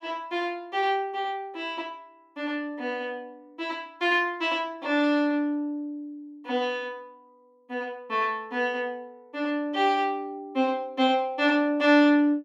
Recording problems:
none

